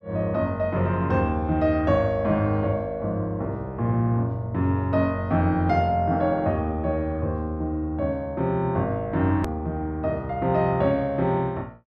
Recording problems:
edit click; at 9.5 s

